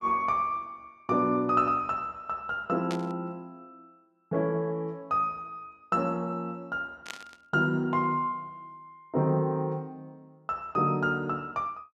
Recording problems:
burst of static; at 3 s and at 7 s; peak -4 dB vs average level

